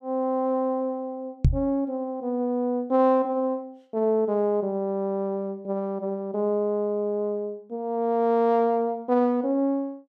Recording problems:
microphone bump; at 1.5 s; peak +9 dB vs average level

